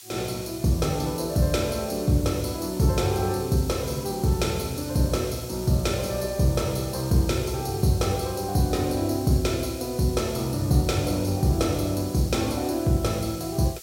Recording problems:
hiss; slope +3 dB per octave, SNR 16 dB

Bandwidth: 16 kHz